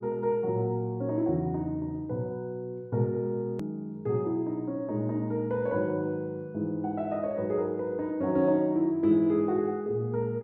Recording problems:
click at an edit; at 3.5 s

